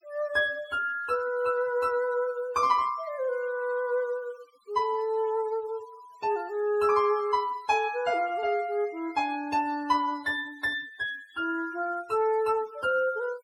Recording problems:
noise reduction artefacts; signal-to-artefact ratio 23 dB

